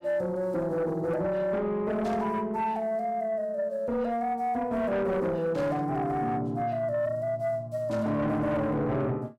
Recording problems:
distorted audio; soft clipping, signal-to-distortion ratio 11 dB
static burst; at 2 s, at 5.5 s and at 8 s; peak -15 dB vs average level

